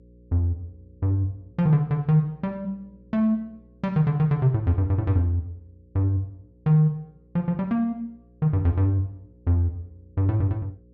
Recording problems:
hum; 60 Hz, harmonics up to 540 Hz, SNR 29 dB

